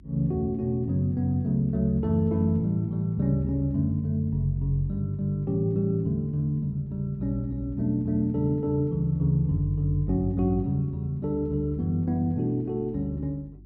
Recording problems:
electrical hum; 50 Hz, harmonics up to 350 Hz, SNR 24 dB

